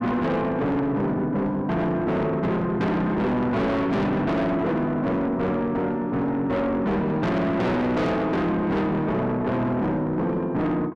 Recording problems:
distortion; soft clipping, signal-to-distortion ratio 6 dB

